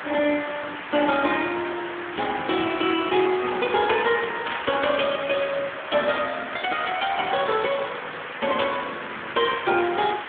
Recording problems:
telephone audio; 260 Hz to 3.4 kHz, Speex
background hiss; SNR 9 dB
burst of static; at 4.5 s and at 8.5 s; peak -1 dB vs average level

